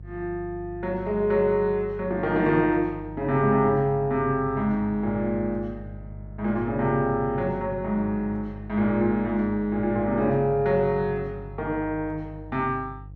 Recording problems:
hum; 50 Hz, harmonics up to 350 Hz, SNR 15 dB

